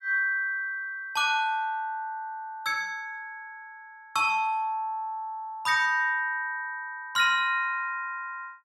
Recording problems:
none

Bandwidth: 16.5 kHz